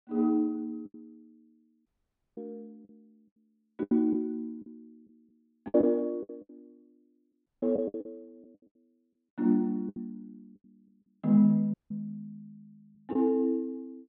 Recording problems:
treble missing; nothing above 4.1 kHz
lost packets; 8% of the sound replaced, filled with the last packet
dropout; at 2 s for 0.5 s, at 7.5 s and at 12 s

